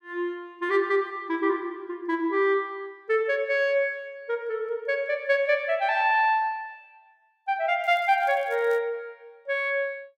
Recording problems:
crackle; at 8 s; loose cable, SNR 29 dB

